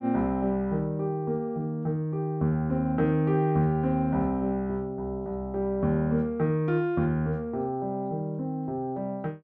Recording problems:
none

